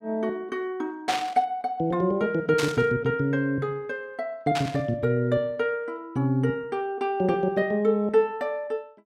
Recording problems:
static burst; at 1 s, at 2.5 s and at 4.5 s; peak +1 dB vs average level

